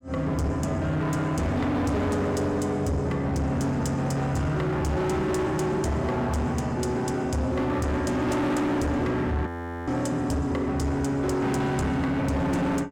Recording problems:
distortion; hard clipping, signal-to-distortion ratio 7 dB
audio freezing; at 9.5 s

